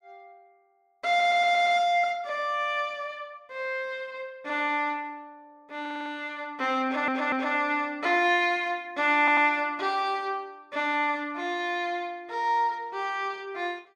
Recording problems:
audio stuttering; 4 times, first at 1 s

